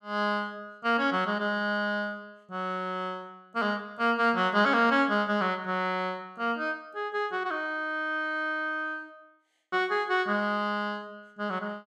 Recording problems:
none

